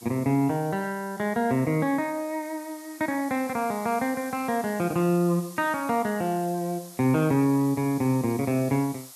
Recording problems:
hiss; SNR 18 dB

